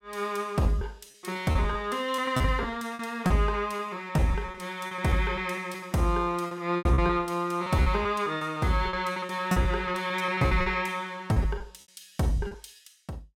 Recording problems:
lost packets; 13% of the sound replaced, filled with repeated pitch periods

